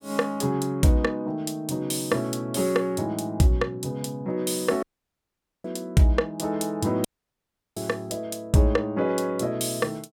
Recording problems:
audio cutting out; at 5 s for 1 s and at 7 s for 0.5 s

